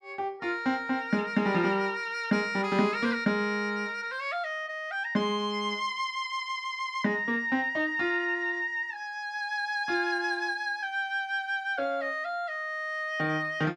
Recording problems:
none

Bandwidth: 13 kHz